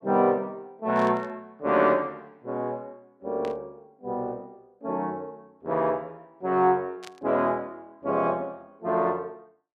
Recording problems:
burst of static; at 1 s, at 3.5 s and at 7 s; peak -11 dB vs average level

